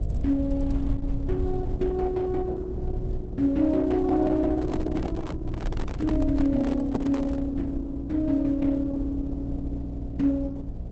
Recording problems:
lossy compression; Opus, log-spectral distance 2 dB, nothing above 7.8 kHz
hum; 60 Hz, harmonics up to 720 Hz, SNR 11 dB
low-frequency rumble; below 78 Hz, SNR 9 dB
handling noise; from 4.5 to 7.5 s; peak -3 dB vs average level

